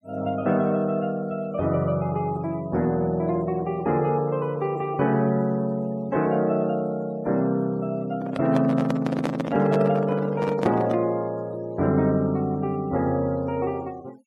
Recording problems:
denoising artefacts; signal-to-artefact ratio 25 dB
handling noise; from 8 to 11 s; peak +2 dB vs average level

